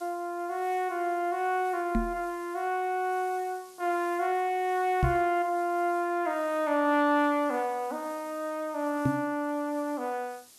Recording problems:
hiss; SNR 24 dB
microphone thump; at 2 s, at 5 s and at 9 s; peak +6 dB vs average level

